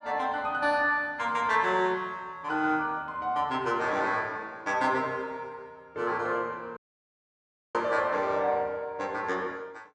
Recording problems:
dropout; at 7 s for 1 s

